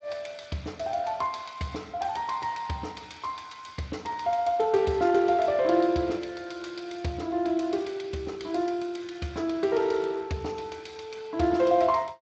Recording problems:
lossy codec; Speex, log-spectral distance 4 dB, nothing above 7.3 kHz

